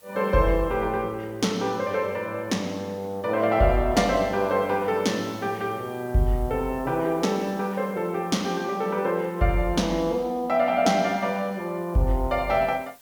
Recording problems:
hiss; slope -1 dB per octave, SNR 27 dB

